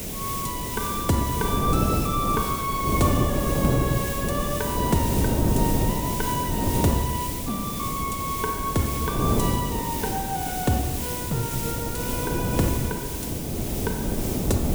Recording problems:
background hiss; slope +3 dB per octave, SNR 3 dB
wind on the microphone; below 360 Hz, SNR 0 dB

